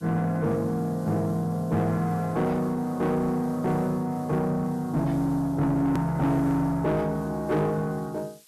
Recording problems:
distortion; soft clipping, signal-to-distortion ratio 10 dB
hiss; slope +3 dB per octave, SNR 27 dB
click at an edit; at 6 s

